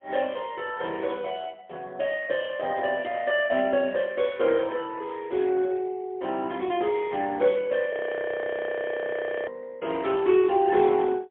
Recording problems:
telephone audio; 280 Hz to 3.3 kHz, AMR-NB, then MP3
frozen audio; at 8 s for 1.5 s

